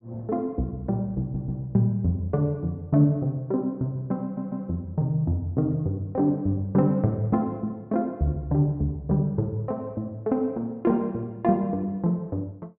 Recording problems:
stutter; at 1 s and at 4 s

